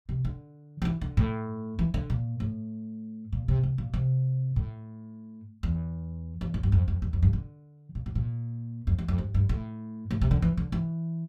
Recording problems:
none

